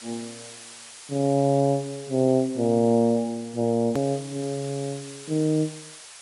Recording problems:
codec artefacts; MP3, log-spectral distance 9 dB, nothing above 13.1 kHz
hiss; slope +2 dB per octave, SNR 17 dB
click at an edit; at 4 s

